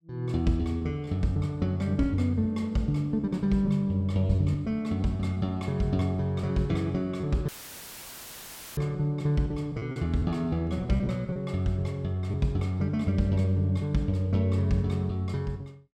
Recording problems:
packet loss; 4% of the sound replaced, filled with repeated pitch periods
audio cutting out; at 7.5 s for 1.5 s; filled with static

